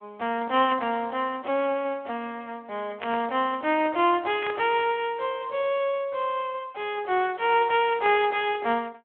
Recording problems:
telephone audio; 240 Hz to 3.3 kHz, Speex
static burst; at 3 s, at 4.5 s and at 8 s; peak -6 dB vs average level

